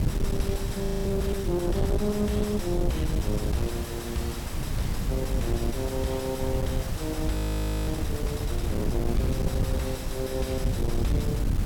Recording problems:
distorted audio; soft clipping, signal-to-distortion ratio 6 dB
background hiss; slope -5 dB per octave, SNR 7 dB
low-frequency rumble; below 150 Hz, SNR -1 dB
audio freezing; at 1 s and at 7.5 s for 0.5 s

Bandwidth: 17 kHz